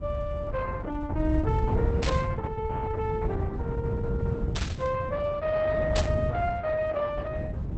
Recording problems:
codec artefacts; Opus, log-spectral distance 2 dB
rumble; below 110 Hz, SNR -2 dB
static burst; at 2 s, at 4.5 s and at 6 s; peak +1 dB vs average level

